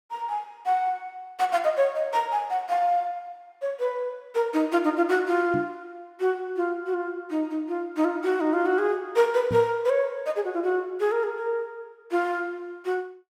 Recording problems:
knock on the microphone; at 5.5 s and at 9.5 s; peak -1 dB vs average level

